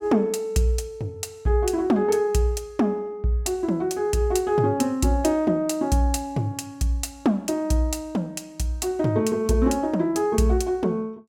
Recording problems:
none

